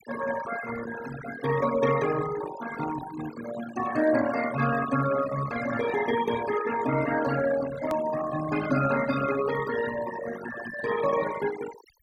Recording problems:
denoising artefacts; signal-to-artefact ratio 9 dB
click at an edit; at 8 s

